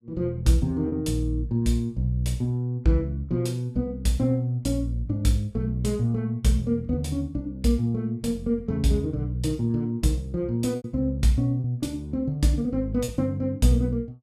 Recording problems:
lost packets; 1.4% of the sound replaced, filled with repeated pitch periods

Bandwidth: 14 kHz